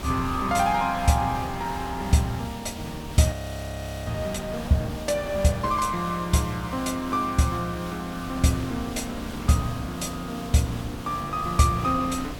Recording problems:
hum; 60 Hz, harmonics up to 300 Hz, SNR 20 dB
hiss; SNR 17 dB
wind on the microphone; below 550 Hz, SNR 14 dB
audio freezing; at 3.5 s for 1 s

